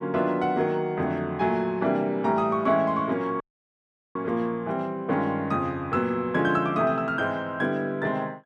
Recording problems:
dropout; at 3.5 s for 1 s

